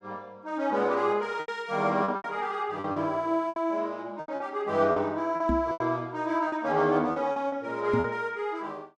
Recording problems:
packet loss; 10% of the sound replaced, filled with repeated pitch periods
knock on the microphone; at 5.5 s and at 8 s; peak +3 dB vs average level

